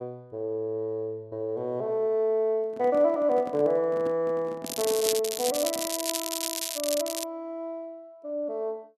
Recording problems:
handling noise; from 2.5 to 6 s; peak -5 dB vs average level
crackling; from 4.5 to 7 s; loose cable, SNR 3 dB

